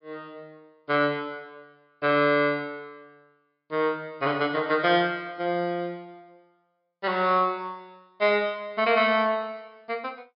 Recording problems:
treble missing; nothing above 5.5 kHz

